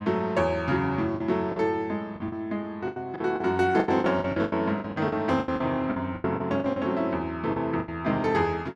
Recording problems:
lost packets; 14% of the sound replaced, filled with the last packet

